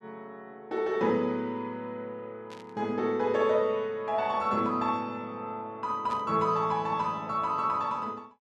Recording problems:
burst of static; at 2.5 s and at 6 s; peak -13 dB vs average level

